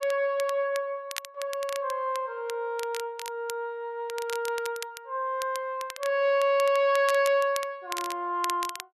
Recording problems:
crackle; vinyl, SNR 13 dB

